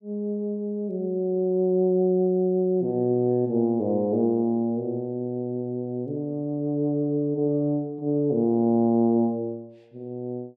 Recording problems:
none

